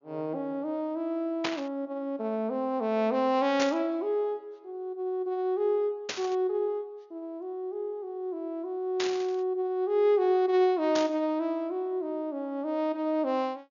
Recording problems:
treble missing; nothing above 7.1 kHz
burst of static; 5 times, first at 1.5 s; peak +2 dB vs average level

